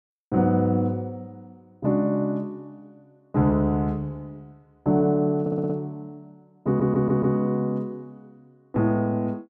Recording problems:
stutter; at 5.5 s and at 6.5 s

